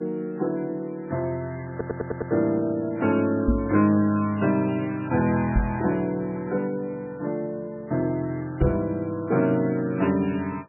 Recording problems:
lossy compression; MP3, log-spectral distance 2 dB, nothing above 2.4 kHz
stutter; at 1.5 s
knock on the microphone; at 3.5 s, at 5.5 s and at 8.5 s; peak +6 dB vs average level

